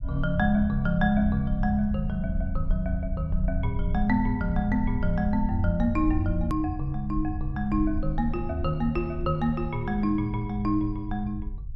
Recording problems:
low-frequency rumble; below 68 Hz, SNR 7 dB
hard cut with a click; at 6.5 s

